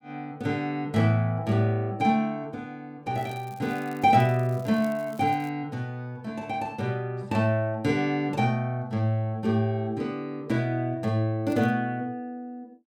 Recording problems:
crackling; from 3 to 5.5 s and at 11 s; loose cable, SNR 26 dB

